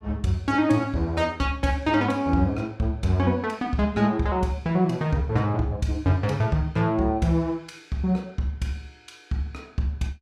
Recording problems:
none

